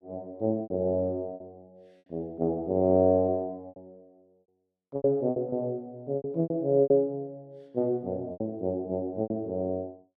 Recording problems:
packet loss; 10% of the sound replaced, filled with repeated pitch periods

